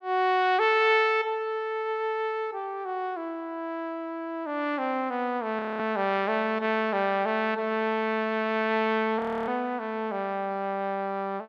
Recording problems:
frozen audio; at 5.5 s and at 9 s

